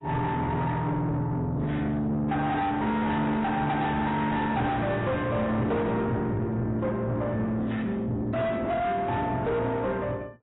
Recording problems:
codec artefacts; AAC, then AAC, log-spectral distance 2 dB, nothing above 3.8 kHz
distortion; soft clipping, signal-to-distortion ratio 6 dB

